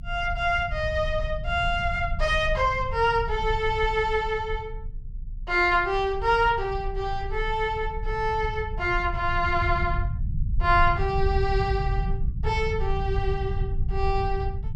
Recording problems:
low-frequency rumble; below 86 Hz, SNR 6 dB

